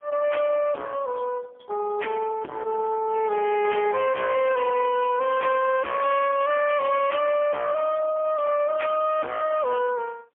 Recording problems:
telephone audio; 240 Hz to 3.3 kHz, AMR-NB, then MP3
distortion; hard clipping, signal-to-distortion ratio 7 dB

